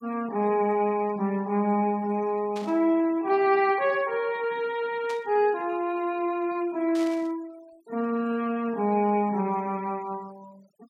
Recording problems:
noise reduction artefacts; signal-to-artefact ratio 26 dB
static burst; at 2.5 s, at 5 s and at 7 s; peak -12 dB vs average level

